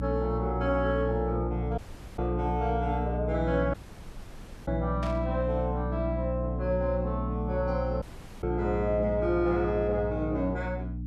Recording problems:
electrical hum; 60 Hz, harmonics up to 300 Hz, SNR 3 dB
audio cutting out; at 2 s, at 3.5 s for 1 s and at 8 s
static burst; at 5 s; peak -8 dB vs average level

